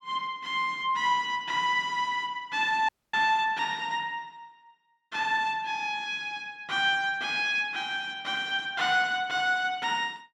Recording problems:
dropout; at 3 s

